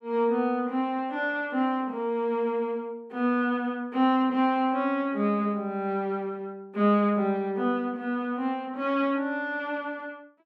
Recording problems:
none

